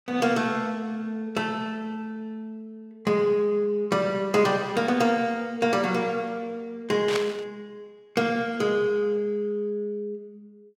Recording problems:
burst of static; at 7 s; peak +1 dB vs average level

